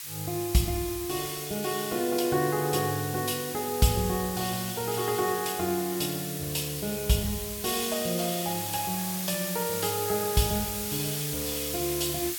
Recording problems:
background hiss; slope +4 dB per octave, SNR 4 dB

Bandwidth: 17 kHz